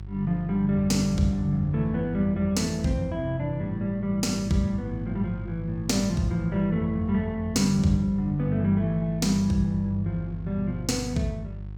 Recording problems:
hum; 50 Hz, harmonics up to 400 Hz, SNR 12 dB

